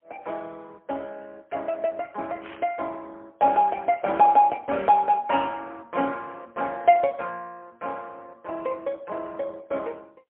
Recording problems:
telephone audio; 240 Hz to 2.3 kHz, AMR-NB, then MP3
burst of static; at 2.5 s; peak -15 dB vs average level

